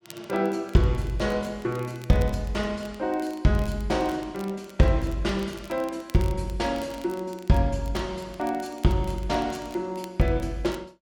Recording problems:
crackle; vinyl, SNR 24 dB

